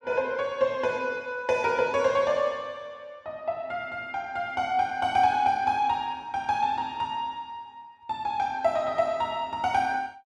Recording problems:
none

